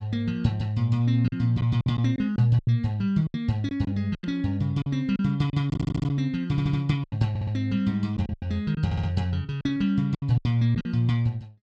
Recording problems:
lost packets; 10% of the sound replaced, filled with silence
stutter; 4 times, first at 5.5 s

